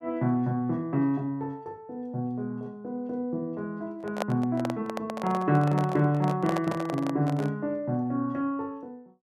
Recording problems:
microphone handling noise; from 4 to 7.5 s; peak +3 dB vs average level

